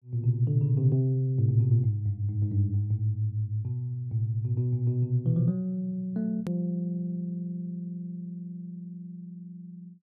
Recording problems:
edit click; at 6.5 s

